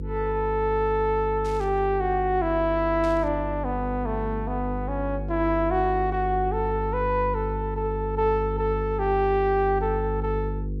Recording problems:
hum; 50 Hz, harmonics up to 500 Hz, SNR 7 dB
burst of static; at 1.5 s and at 3 s; peak -15 dB vs average level

